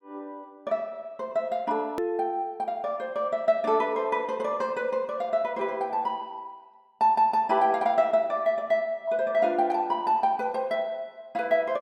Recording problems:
click at an edit; at 2 s

